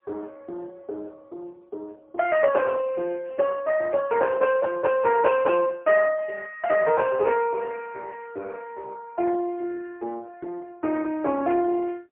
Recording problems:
telephone audio; 280 Hz to 2.6 kHz, AMR-NB, then MP3

